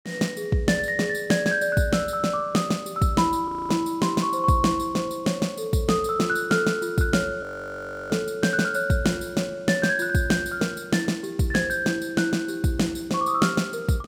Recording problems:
audio freezing; at 3.5 s and at 7.5 s for 0.5 s

